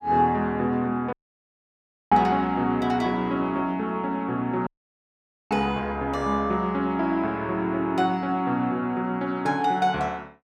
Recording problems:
audio cutting out; at 1 s for 1 s and at 4.5 s for 1 s

